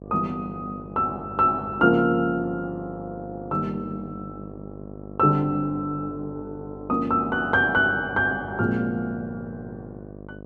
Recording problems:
electrical hum; 50 Hz, harmonics up to 1.1 kHz, SNR 15 dB

